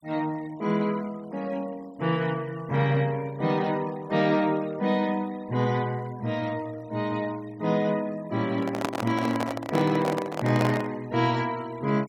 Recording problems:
noise reduction artefacts; signal-to-artefact ratio 23 dB
microphone handling noise; from 8.5 to 11 s; peak +3 dB vs average level

